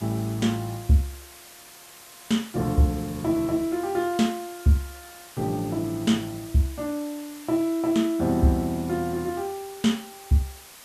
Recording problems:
background hiss; slope 0 dB per octave, SNR 18 dB

